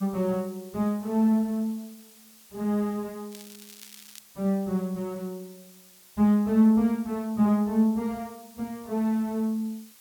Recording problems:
background hiss; slope +1 dB per octave, SNR 25 dB
crackling; at 3.5 s; loose cable, SNR 20 dB

